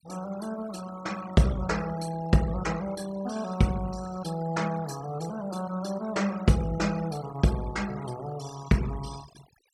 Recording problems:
noise reduction artefacts; signal-to-artefact ratio 17 dB

